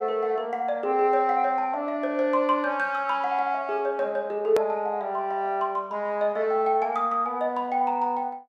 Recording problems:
edit click; at 4.5 s

